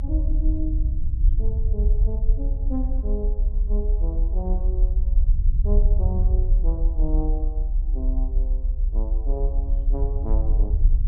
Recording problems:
rumble; below 56 Hz, SNR -11 dB

